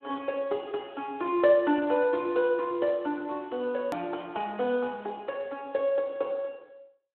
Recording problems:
telephone audio; 260 Hz to 3.9 kHz, Speex
edit click; at 4 s

